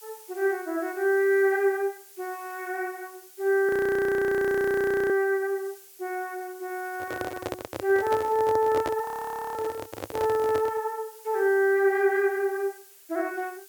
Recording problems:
background hiss; slope +3 dB per octave, SNR 22 dB
audio freezing; at 3.5 s for 1.5 s and at 9 s for 0.5 s
handling noise; from 7 to 11 s; peak -2 dB vs average level

